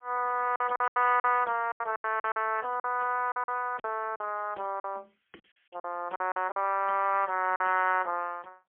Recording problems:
phone line; 300 Hz to 3.2 kHz, AMR-NB, then MP3
packet loss; 12% of the sound replaced, filled with silence

